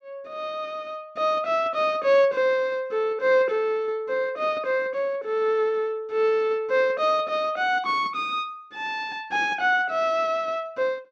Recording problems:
none

